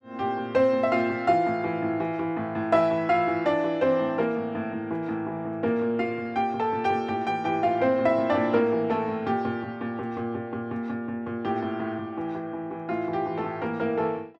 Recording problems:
none

